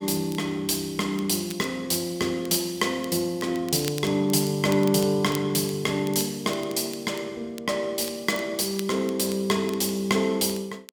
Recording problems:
crackle; vinyl, SNR 18 dB

